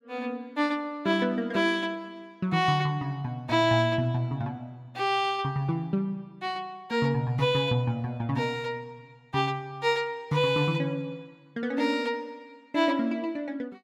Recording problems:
none

